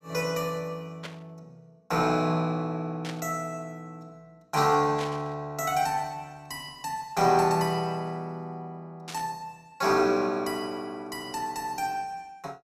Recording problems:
static burst; 4 times, first at 1 s; peak -6 dB vs average level

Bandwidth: 15.5 kHz